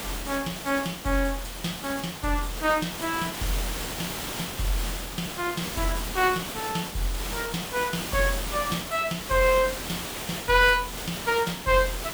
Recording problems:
hiss; slope -3 dB per octave, SNR 6 dB

